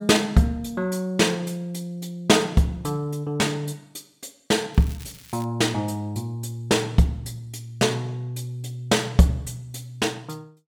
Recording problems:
crackling; at 5 s; loose cable, SNR 22 dB

